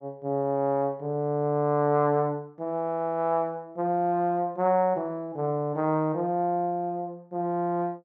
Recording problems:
none

